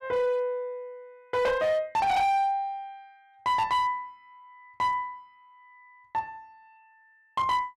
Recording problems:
distorted audio; hard clipping, uneven, signal-to-distortion ratio 11 dB

